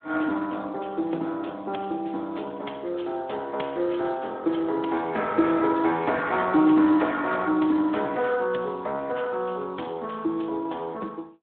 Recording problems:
telephone audio; 240 Hz to 3.6 kHz, Speex

